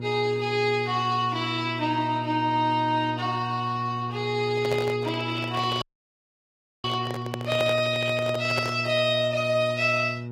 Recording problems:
lossy codec; Vorbis, log-spectral distance 2 dB, nothing above 14.3 kHz
mains hum; 60 Hz, harmonics up to 960 Hz, SNR 9 dB
microphone handling noise; from 4.5 to 9 s; peak -1 dB vs average level
dropout; at 6 s for 1 s

